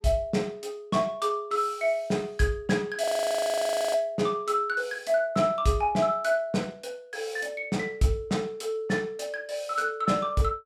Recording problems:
audio freezing; at 3 s for 1 s

